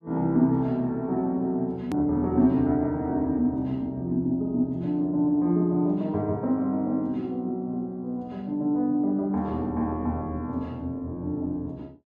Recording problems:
edit click; at 2 s

